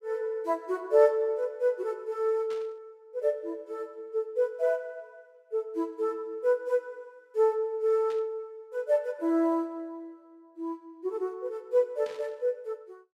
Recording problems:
static burst; at 2.5 s, at 8 s and at 12 s; peak -14 dB vs average level

